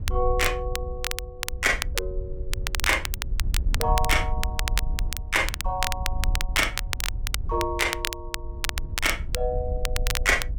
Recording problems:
wind on the microphone; below 64 Hz, SNR 5 dB
crackling; vinyl, SNR 5 dB

